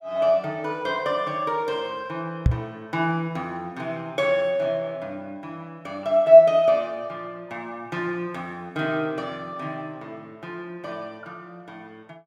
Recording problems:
microphone thump; at 2.5 s; peak +7 dB vs average level

